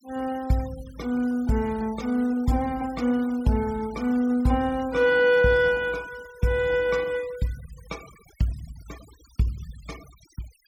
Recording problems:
noise reduction artefacts; signal-to-artefact ratio 23 dB

